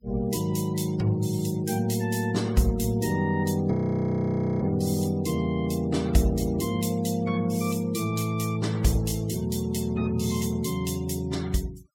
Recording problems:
noise reduction artefacts; signal-to-artefact ratio 21 dB
frozen audio; at 3.5 s for 1 s

